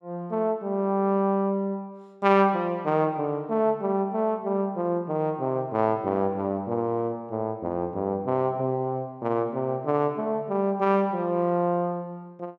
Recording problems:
none

